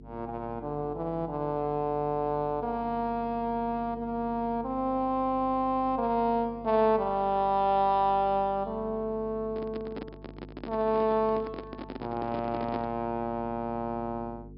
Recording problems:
treble cut off; nothing above 5.5 kHz
hum; 50 Hz, harmonics up to 450 Hz, SNR 19 dB
handling noise; from 9.5 to 13 s; peak -3 dB vs average level

